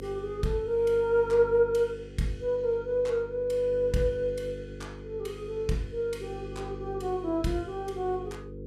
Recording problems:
electrical hum; 50 Hz, harmonics up to 500 Hz, SNR 13 dB

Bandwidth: 15 kHz